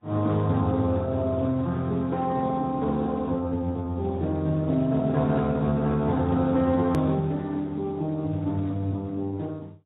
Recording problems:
lossy compression; Speex, then AAC, log-spectral distance 2 dB, nothing above 13.1 kHz
hard cut with a click; at 7 s

